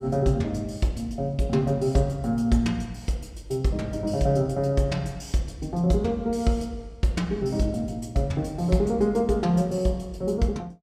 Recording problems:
none

